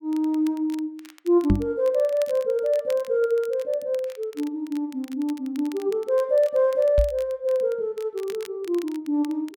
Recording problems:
crackle; vinyl, SNR 24 dB
knock on the microphone; at 1.5 s and at 7 s; peak +7 dB vs average level

